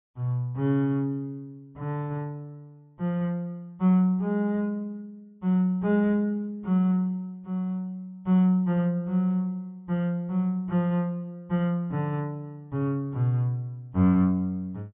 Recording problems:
low-pass filter; nothing above 3.6 kHz

